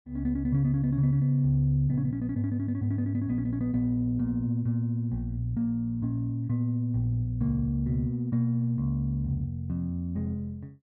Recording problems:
none

